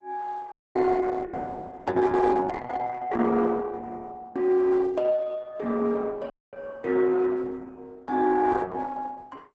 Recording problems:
lossy compression; Opus, log-spectral distance 4 dB, nothing above 8 kHz
dropout; at 0.5 s and at 6.5 s

